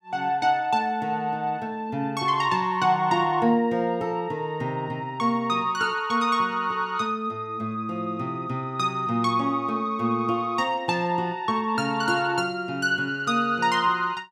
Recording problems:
none

